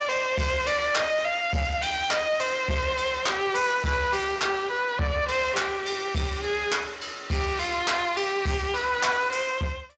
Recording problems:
lossy compression; Speex, log-spectral distance 5 dB, nothing above 7.3 kHz
distorted audio; soft clipping, signal-to-distortion ratio 12 dB

